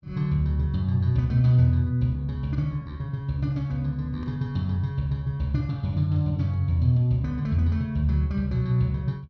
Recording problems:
none

